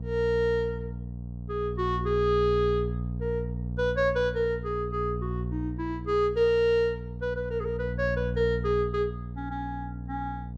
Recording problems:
hum; 60 Hz, harmonics up to 480 Hz, SNR 6 dB

